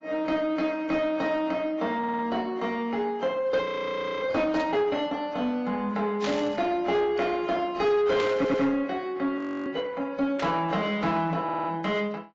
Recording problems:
lossy codec; AAC, log-spectral distance 2 dB
distorted audio; soft clipping, signal-to-distortion ratio 12 dB
audio stuttering; at 2 s, at 8.5 s and at 11 s
frozen audio; at 3.5 s for 0.5 s and at 9.5 s
burst of static; 4 times, first at 4.5 s; peak -3 dB vs average level

